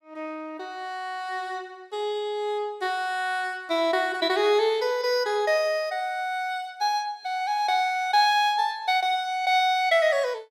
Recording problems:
none

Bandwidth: 17 kHz